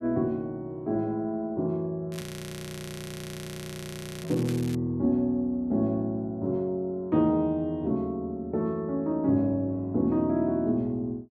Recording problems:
crackling; from 2 to 5 s; loose cable, SNR 15 dB
frozen audio; at 2 s for 2 s

